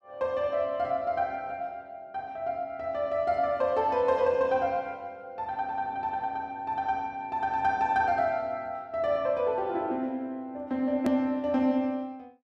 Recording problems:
click at an edit; at 11 s

